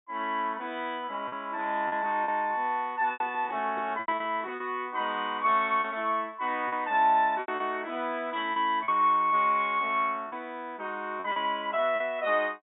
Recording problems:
low-pass filter; nothing above 4 kHz
lost packets; 6% of the sound replaced, filled with repeated pitch periods
microphone handling noise; from 3 to 4.5 s; peak -12 dB vs average level

